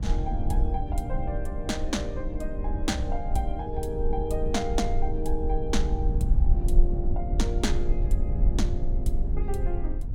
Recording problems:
rumble; below 58 Hz, strongest tone 20 Hz, SNR -3 dB

